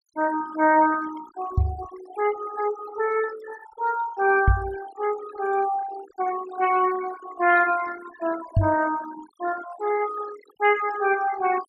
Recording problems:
denoising artefacts; signal-to-artefact ratio 14 dB
knock on the microphone; at 1.5 s, at 4.5 s and at 8.5 s; peak +8 dB vs average level

